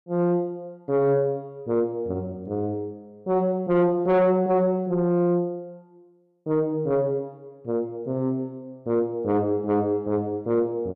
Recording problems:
distortion; soft clipping, signal-to-distortion ratio 10 dB

